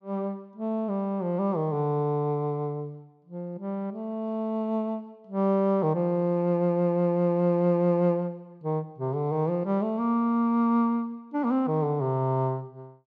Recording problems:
none

